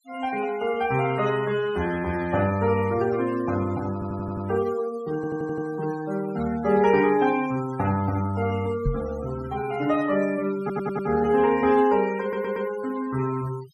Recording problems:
denoising artefacts; signal-to-artefact ratio 17 dB
stutter; 4 times, first at 4 s
microphone thump; at 9 s; peak +2 dB vs average level

